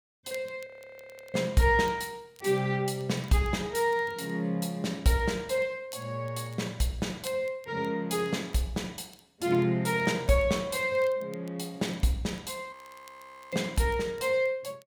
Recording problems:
crackle; vinyl, SNR 28 dB
audio freezing; at 0.5 s for 0.5 s and at 13 s for 1 s

